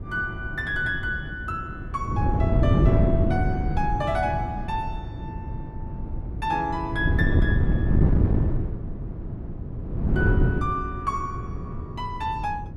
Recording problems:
wind on the microphone; below 180 Hz, SNR -2 dB

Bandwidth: 12.5 kHz